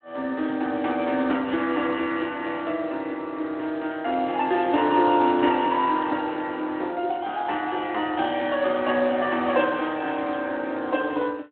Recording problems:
phone line; 240 Hz to 3.7 kHz, Speex

